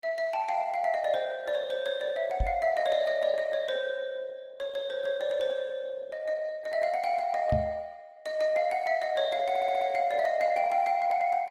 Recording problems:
lossy compression; Opus, log-spectral distance 2 dB, nothing above 18.3 kHz
knock on the microphone; at 2.5 s and at 7.5 s; peak +2 dB vs average level
stutter; at 9.5 s

